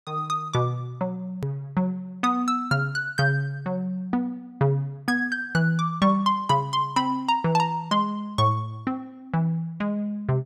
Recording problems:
hard cut with a click; at 1.5 s

